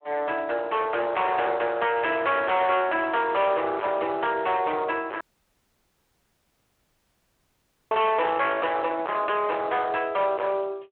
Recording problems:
phone line; 340 Hz to 3.3 kHz, Speex
distortion; hard clipping, signal-to-distortion ratio 5 dB
dropout; at 5 s for 2.5 s

